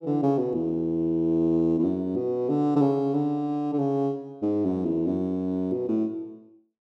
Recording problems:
none

